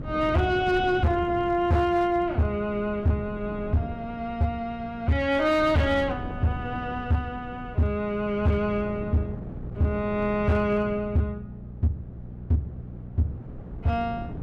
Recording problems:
distortion; hard clipping, signal-to-distortion ratio 11 dB
hum; 60 Hz, harmonics up to 600 Hz, SNR 17 dB
wind noise; below 270 Hz, SNR 14 dB

